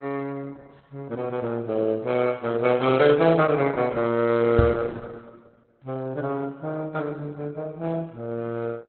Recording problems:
codec artefacts; Opus, log-spectral distance 3 dB, nothing above 3.9 kHz
microphone bump; at 4.5 s; peak +7 dB vs average level

